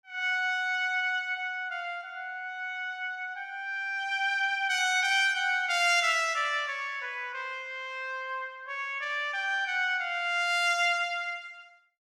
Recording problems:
none

